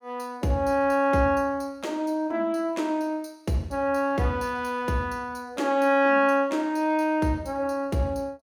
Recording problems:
none

